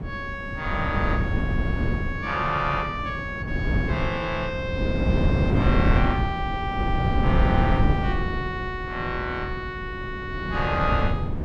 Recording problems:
wind noise; below 220 Hz, SNR -2 dB

